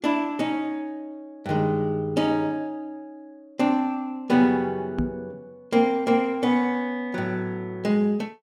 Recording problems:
microphone bump; at 5 s; peak +2 dB vs average level

